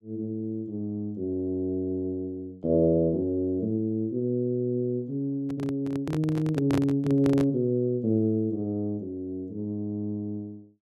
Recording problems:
handling noise; from 5.5 to 7.5 s; peak +1 dB vs average level

